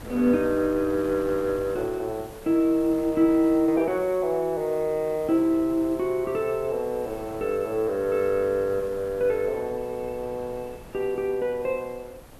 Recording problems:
hiss; SNR 27 dB
wind noise; below 790 Hz, SNR 20 dB

